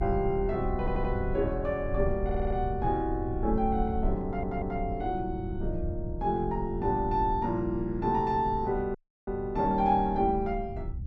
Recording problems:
low-frequency rumble; below 82 Hz, SNR 8 dB
audio stuttering; at 1 s, at 2 s and at 4.5 s
audio cutting out; at 9 s

